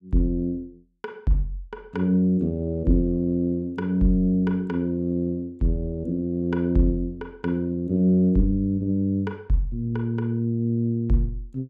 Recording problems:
none

